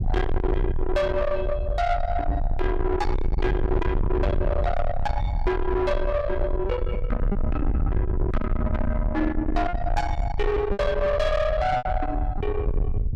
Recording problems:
distortion; soft clipping, signal-to-distortion ratio 6 dB
low-frequency rumble; below 170 Hz, SNR 2 dB
lost packets; 3% of the sound replaced, filled with repeated pitch periods

